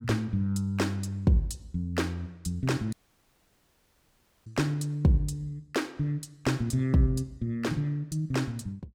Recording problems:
dropout; at 3 s for 1.5 s

